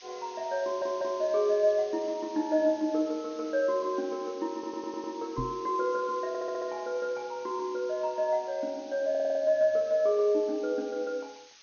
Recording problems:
treble missing; nothing above 6.6 kHz
hiss; slope +4 dB per octave, SNR 22 dB
stutter; 4 times, first at 0.5 s
microphone bump; at 5.5 s; peak -1 dB vs average level

